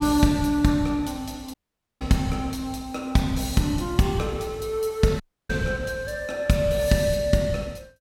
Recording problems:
audio cutting out; at 1.5 s and at 5 s

